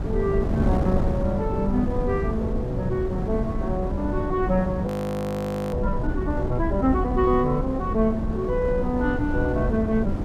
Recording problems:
wind on the microphone; below 230 Hz, SNR 2 dB
frozen audio; at 5 s for 1 s

